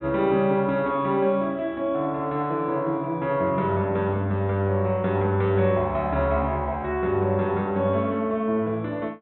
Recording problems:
treble cut off; nothing above 4 kHz

